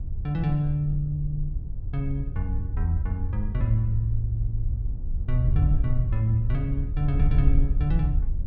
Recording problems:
wind on the microphone; below 64 Hz, SNR 1 dB

